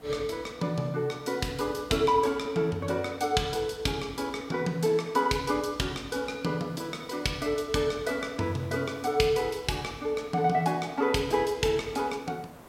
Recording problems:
hiss; SNR 24 dB

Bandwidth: 16 kHz